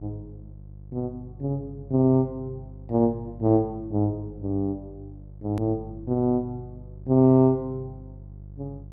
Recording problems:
hum; 50 Hz, harmonics up to 350 Hz, SNR 18 dB
click at an edit; at 5.5 s

